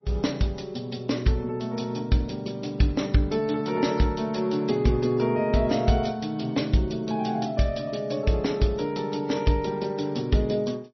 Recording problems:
lossy codec; MP3, log-spectral distance 5 dB, nothing above 5.8 kHz

